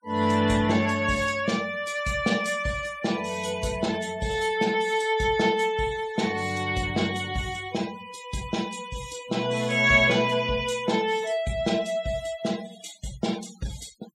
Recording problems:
noise reduction artefacts; signal-to-artefact ratio 18 dB

